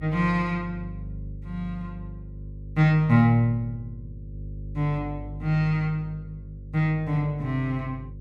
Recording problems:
hum; 50 Hz, harmonics up to 450 Hz, SNR 14 dB

